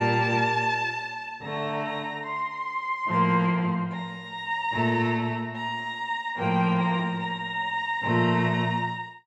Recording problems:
none

